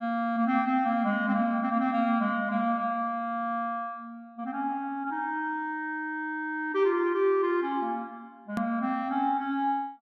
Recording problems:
edit click; at 8.5 s

